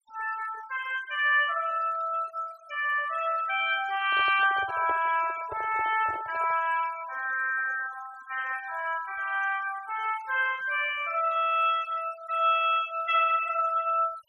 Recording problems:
noise reduction artefacts; signal-to-artefact ratio 18 dB
handling noise; from 4 to 6.5 s; peak -7 dB vs average level

